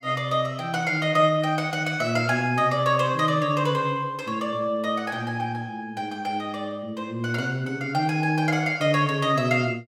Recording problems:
none

